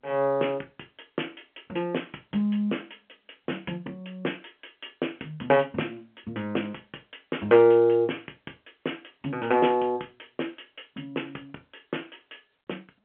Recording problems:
phone line; 240 Hz to 3.3 kHz, G.711

